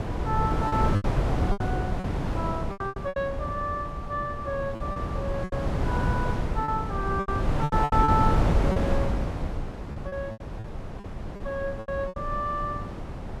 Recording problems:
wind noise; below 330 Hz, SNR -1 dB
lost packets; 12% of the sound replaced, filled with repeated pitch periods

